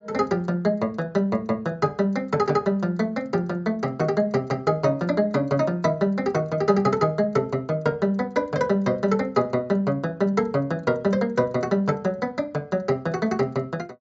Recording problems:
treble missing; nothing above 8 kHz

